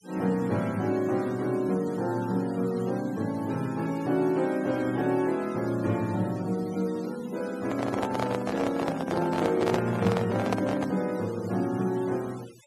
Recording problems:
denoising artefacts; signal-to-artefact ratio 19 dB
microphone handling noise; from 7.5 to 11 s; peak +4 dB vs average level

